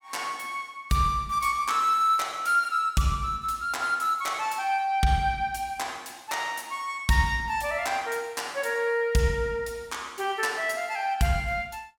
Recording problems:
none

